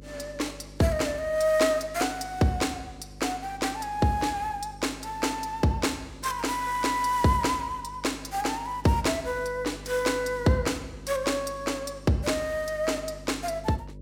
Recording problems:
electrical hum; 50 Hz, harmonics up to 600 Hz, SNR 19 dB

